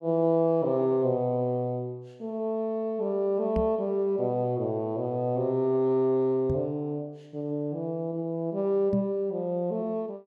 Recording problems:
microphone thump; at 3.5 s, at 6.5 s and at 9 s; peak 0 dB vs average level

